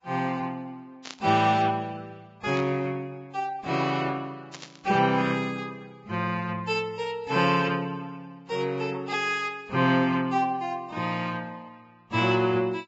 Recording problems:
codec artefacts; Vorbis, log-spectral distance 3 dB, nothing above 7.6 kHz
burst of static; at 1 s, at 2.5 s and at 4.5 s; peak -7 dB vs average level

